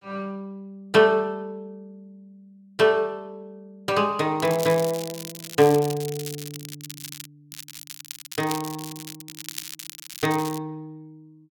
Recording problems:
crackle; from 4.5 to 7.5 s and from 7.5 to 11 s; loose cable, SNR 13 dB

